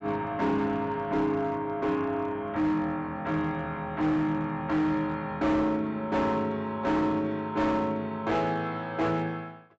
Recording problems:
treble cut off; nothing above 7.8 kHz
distorted audio; hard clipping, uneven, signal-to-distortion ratio 11 dB

